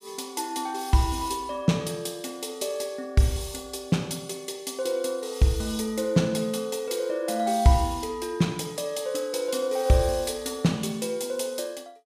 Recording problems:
none

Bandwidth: 15 kHz